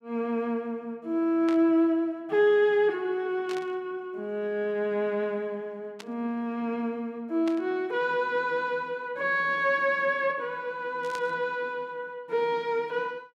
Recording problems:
static burst; 5 times, first at 1.5 s; peak -8 dB vs average level

